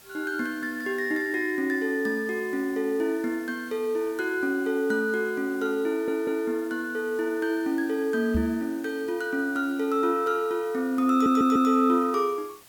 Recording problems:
hiss; slope -1 dB per octave, SNR 23 dB
audio stuttering; at 6 s and at 11 s
knock on the microphone; at 8.5 s; peak +1 dB vs average level

